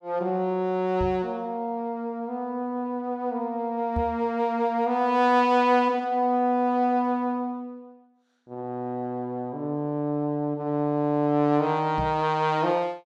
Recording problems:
microphone thump; at 1 s, at 4 s and at 12 s; peak -2 dB vs average level

